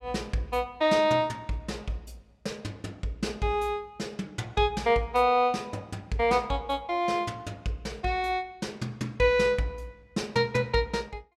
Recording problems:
none

